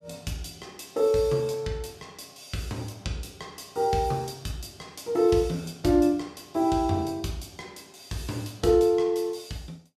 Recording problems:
none

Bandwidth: 15.5 kHz